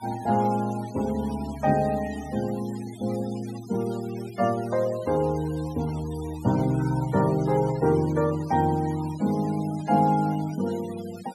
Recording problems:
denoising artefacts; signal-to-artefact ratio 19 dB

